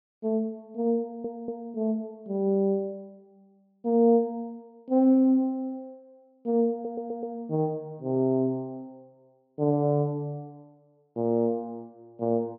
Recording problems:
low-pass filter; nothing above 5.5 kHz
audio stuttering; at 1 s and at 6.5 s

